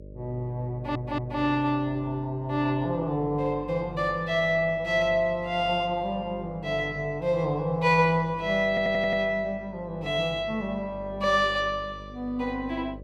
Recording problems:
hum; 50 Hz, harmonics up to 600 Hz, SNR 18 dB
stutter; at 0.5 s and at 8.5 s

